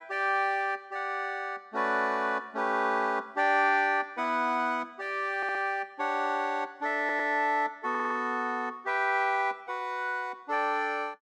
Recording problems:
audio stuttering; at 5.5 s, at 7 s and at 8 s

